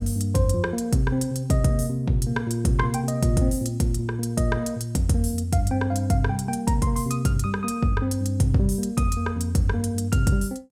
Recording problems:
none

